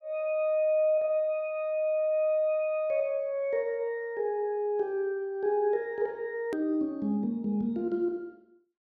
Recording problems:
edit click; at 6.5 s

